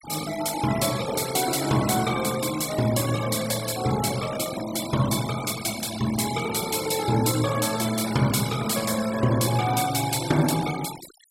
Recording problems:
denoising artefacts; signal-to-artefact ratio 11 dB

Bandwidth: 16 kHz